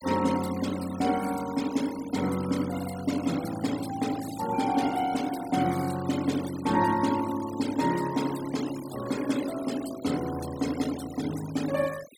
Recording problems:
noise reduction artefacts; signal-to-artefact ratio 14 dB

